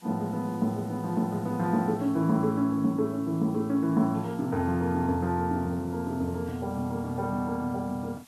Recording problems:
hiss; slope -1 dB per octave, SNR 26 dB

